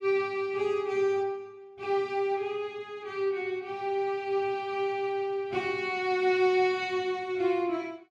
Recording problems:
none

